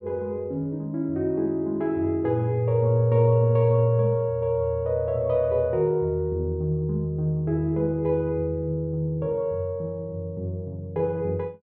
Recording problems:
none

